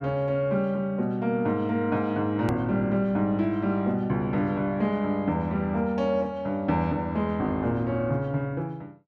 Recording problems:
click at an edit; at 2.5 s

